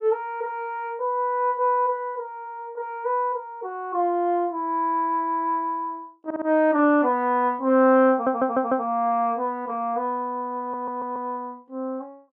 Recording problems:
stutter; at 6.5 s, at 8 s and at 11 s

